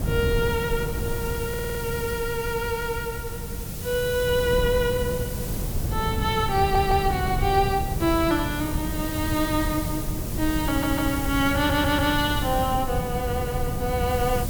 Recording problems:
hiss; slope +3 dB per octave, SNR 10 dB
wind on the microphone; below 180 Hz, SNR 5 dB
stutter; 4 times, first at 1.5 s

